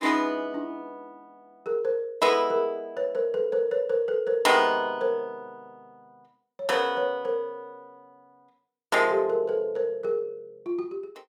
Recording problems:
none

